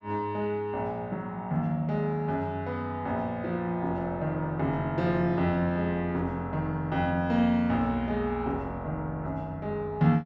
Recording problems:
none

